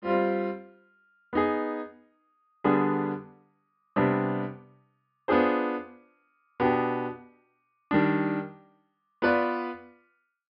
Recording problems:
treble missing; nothing above 5.5 kHz

